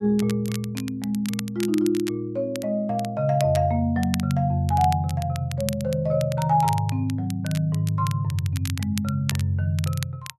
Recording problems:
crackling; vinyl, SNR 14 dB

